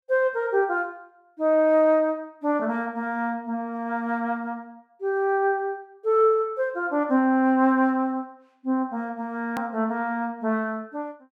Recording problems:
hard cut with a click; at 9.5 s

